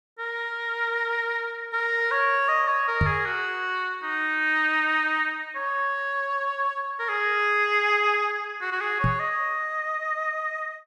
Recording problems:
microphone thump; at 3 s and at 9 s; peak +4 dB vs average level

